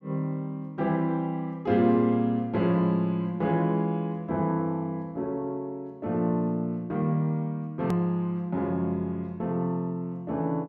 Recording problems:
click at an edit; at 8 s

